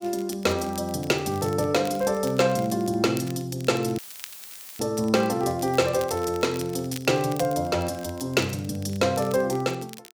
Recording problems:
crackle; vinyl, SNR 19 dB
audio cutting out; at 4 s for 1 s; filled with static

